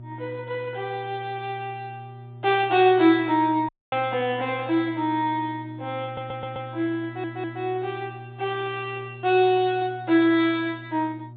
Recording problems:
low-pass filter; nothing above 4 kHz
hum; 60 Hz, harmonics up to 600 Hz, SNR 17 dB
dropout; at 3.5 s
audio stuttering; at 6 s and at 7 s

